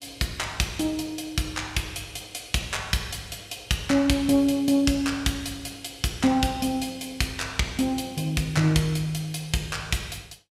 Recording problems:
none

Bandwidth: 15.5 kHz